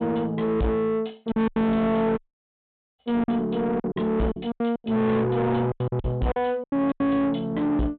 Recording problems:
treble cut off; nothing above 4 kHz
distorted audio; soft clipping, signal-to-distortion ratio 7 dB
packet loss; 11% of the sound replaced, filled with silence
dropout; at 2 s for 1 s

